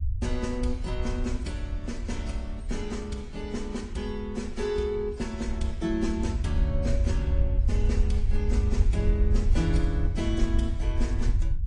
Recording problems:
lossy codec; MP3, then AAC, log-spectral distance 2 dB, nothing above 9.8 kHz
rumble; below 74 Hz, SNR -3 dB

